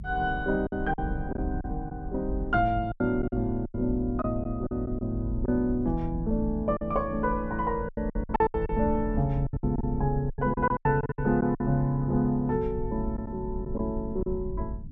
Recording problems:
low-frequency rumble; below 88 Hz, SNR 8 dB
lost packets; 10% of the sound replaced, filled with silence

